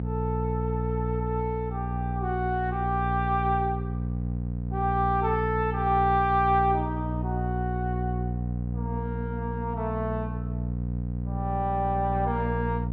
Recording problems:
hum; 60 Hz, harmonics up to 540 Hz, SNR 2 dB

